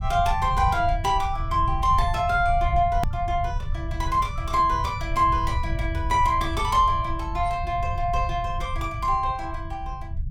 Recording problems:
rumble; below 92 Hz, SNR 7 dB
edit click; at 3 s

